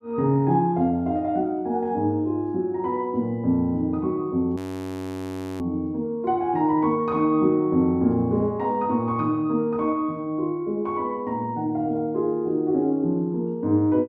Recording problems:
frozen audio; at 4.5 s for 1 s

